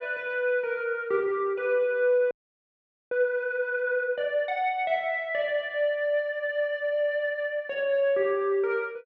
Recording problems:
frozen audio; at 2.5 s for 1 s

